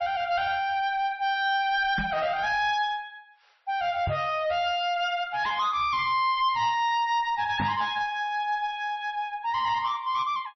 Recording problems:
lossy codec; MP3, log-spectral distance 2 dB, nothing above 5.8 kHz
distorted audio; soft clipping, signal-to-distortion ratio 10 dB
knock on the microphone; at 2 s, at 4 s and at 7.5 s; peak -1 dB vs average level

